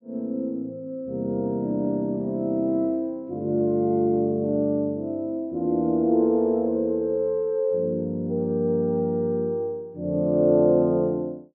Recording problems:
none

